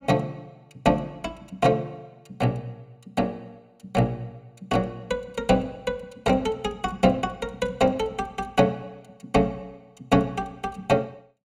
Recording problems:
none

